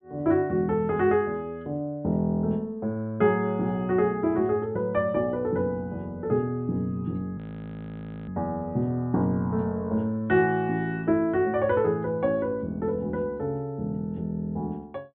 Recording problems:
low-pass filter; nothing above 4 kHz
audio freezing; at 7.5 s for 1 s

